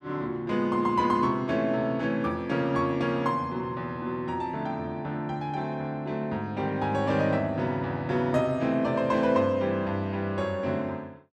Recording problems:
none

